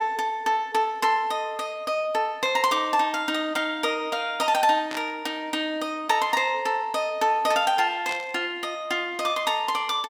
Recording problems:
static burst; at 2.5 s, at 5 s and at 8 s; peak -6 dB vs average level

